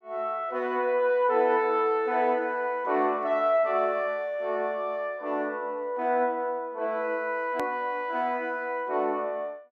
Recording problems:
edit click; at 7.5 s

